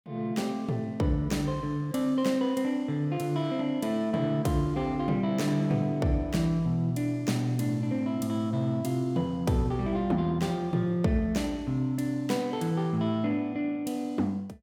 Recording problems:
none

